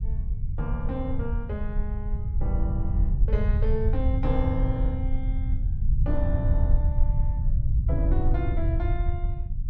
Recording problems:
rumble; below 80 Hz, SNR -7 dB

